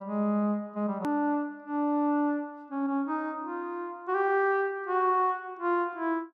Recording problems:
hard cut with a click; at 1 s

